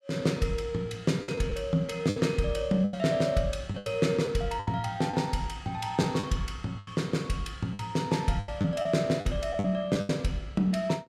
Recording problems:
lost packets; 8% of the sound replaced, filled with the last packet

